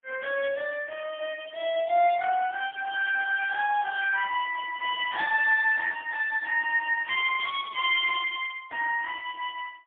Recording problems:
telephone audio; 470 Hz to 3.3 kHz, AMR-NB, then MP3

